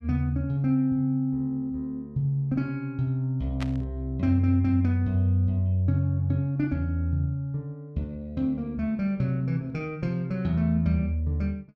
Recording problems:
static burst; at 3.5 s; peak -6 dB vs average level

